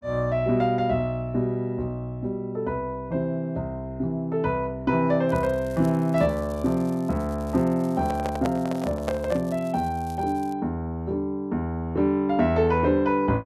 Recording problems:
crackling; from 5.5 to 11 s; loose cable, SNR 26 dB
microphone handling noise; from 8 to 9.5 s; peak -1 dB vs average level

